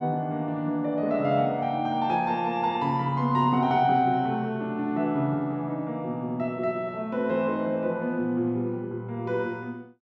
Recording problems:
none

